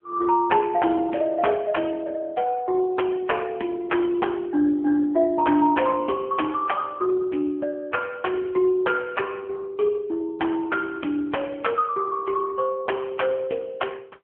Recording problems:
telephone audio; 220 Hz to 3.3 kHz, AMR-NB

